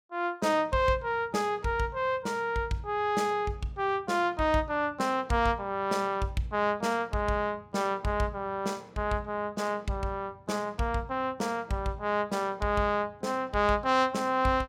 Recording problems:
none

